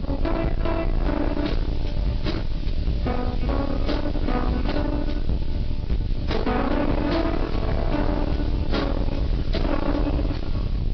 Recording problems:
treble cut off; nothing above 5.3 kHz
codec artefacts; AAC, log-spectral distance 3 dB
distortion; soft clipping, signal-to-distortion ratio 6 dB
background hiss; SNR 20 dB
low-frequency rumble; below 210 Hz, SNR 1 dB

